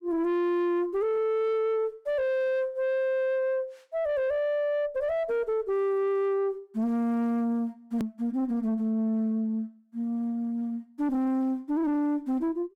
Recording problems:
distortion; soft clipping, signal-to-distortion ratio 6 dB
click at an edit; at 8 s

